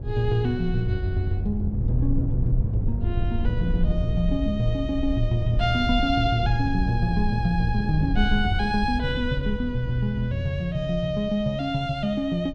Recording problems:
wind on the microphone; below 84 Hz, SNR 4 dB

